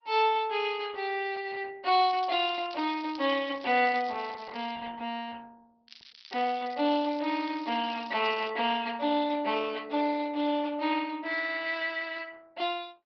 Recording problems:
treble cut off; nothing above 5.5 kHz
codec artefacts; Opus, log-spectral distance 5 dB
crackle; from 2 to 4.5 s and from 6 to 8.5 s; loose cable, SNR 21 dB

